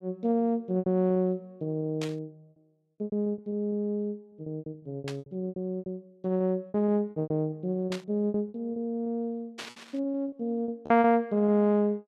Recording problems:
packet loss; 15% of the sound replaced, filled with repeated pitch periods
burst of static; 4 times, first at 2 s; peak -5 dB vs average level

